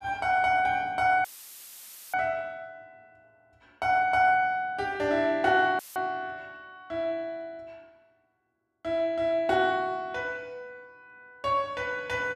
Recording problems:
dropout; at 1 s for 1 s and at 6 s; filled with static

